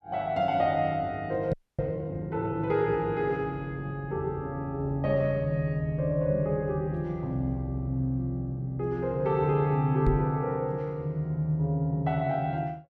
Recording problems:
microphone bump; at 1.5 s and at 10 s; peak +4 dB vs average level
frozen audio; at 1.5 s

